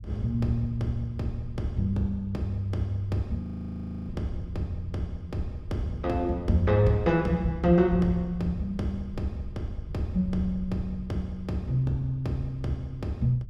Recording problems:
low-frequency rumble; below 100 Hz, SNR 14 dB
frozen audio; at 3.5 s for 0.5 s

